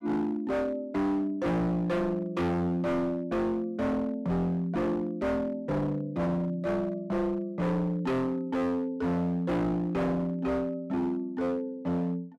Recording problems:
distortion; hard clipping, signal-to-distortion ratio 6 dB

